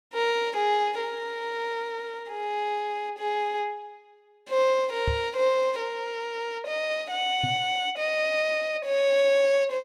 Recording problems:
microphone thump; at 5 s and at 7.5 s; peak +1 dB vs average level

